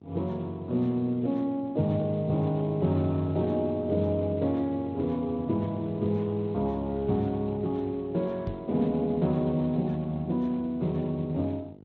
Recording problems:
lossy compression; Speex, log-spectral distance 2 dB
electrical hum; 50 Hz, harmonics up to 900 Hz, SNR 24 dB
knock on the microphone; at 8.5 s; peak -3 dB vs average level

